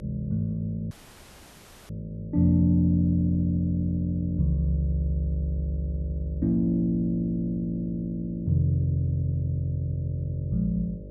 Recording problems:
hum; 50 Hz, harmonics up to 600 Hz, SNR 16 dB
dropout; at 1 s for 1 s

